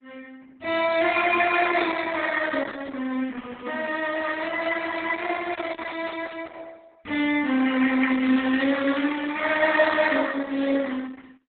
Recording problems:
codec artefacts; Opus, log-spectral distance 5 dB, nothing above 4 kHz

